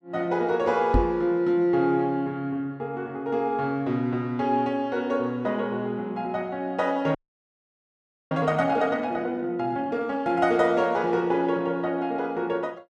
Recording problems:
microphone thump; at 1 s; peak +5 dB vs average level
audio freezing; at 7 s for 1 s

